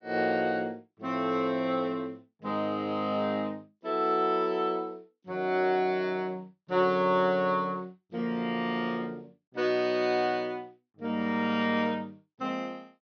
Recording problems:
low-pass filter; nothing above 6.3 kHz

